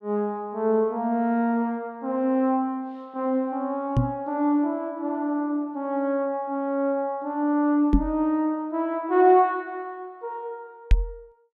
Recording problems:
knock on the microphone; at 4 s, at 8 s and at 11 s; peak +9 dB vs average level

